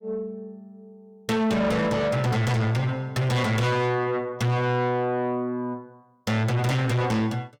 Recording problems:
distortion; soft clipping, signal-to-distortion ratio 7 dB

